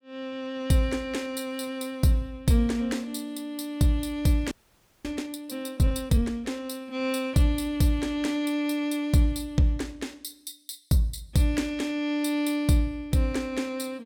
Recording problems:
audio freezing; at 4.5 s for 0.5 s

